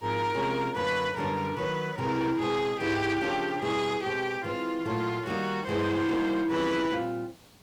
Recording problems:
distortion; soft clipping, signal-to-distortion ratio 11 dB
background hiss; SNR 27 dB

